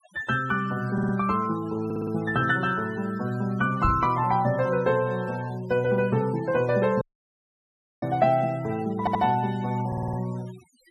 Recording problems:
denoising artefacts; signal-to-artefact ratio 21 dB
audio stuttering; 4 times, first at 1 s
knock on the microphone; at 4 s; peak +2 dB vs average level
dropout; at 7 s for 1 s

